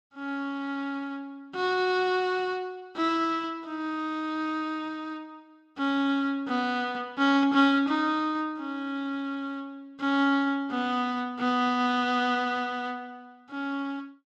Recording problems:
none

